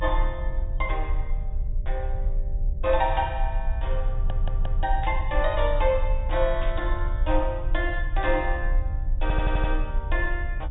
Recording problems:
treble cut off; nothing above 4 kHz
low-frequency rumble; below 50 Hz, strongest tone 30 Hz, SNR 1 dB
stutter; at 4 s and at 9 s
burst of static; at 5 s and at 6.5 s; peak -8 dB vs average level

